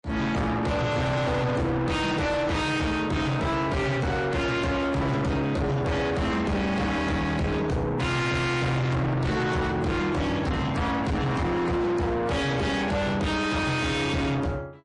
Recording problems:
lossy codec; MP3, log-spectral distance 2 dB, nothing above 10.4 kHz
distortion; soft clipping, signal-to-distortion ratio 5 dB

